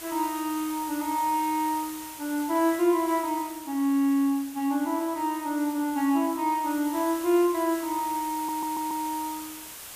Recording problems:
hiss; slope 0 dB per octave, SNR 13 dB
stutter; at 8.5 s

